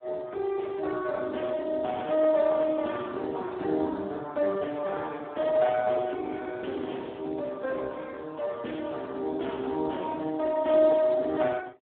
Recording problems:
phone line; 240 Hz to 3.6 kHz, Speex

